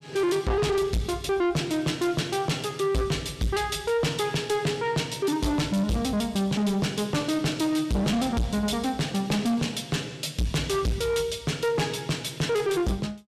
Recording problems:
distortion; soft clipping, signal-to-distortion ratio 6 dB

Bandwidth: 14.5 kHz